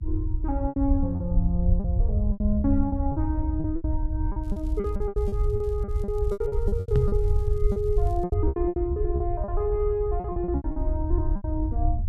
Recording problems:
rumble; below 84 Hz, SNR -1 dB
lost packets; 16% of the sound replaced, filled with repeated pitch periods
crackling; from 4.5 to 8.5 s; loose cable, SNR 29 dB
knock on the microphone; at 7 s; peak +9 dB vs average level

